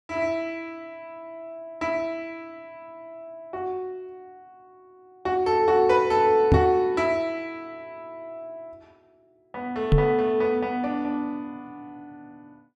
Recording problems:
microphone bump; at 6.5 s and at 10 s; peak +8 dB vs average level

